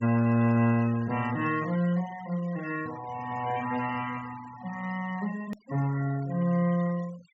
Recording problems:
low-pass filter; nothing above 7.8 kHz
noise reduction artefacts; signal-to-artefact ratio 17 dB
edit click; at 5.5 s

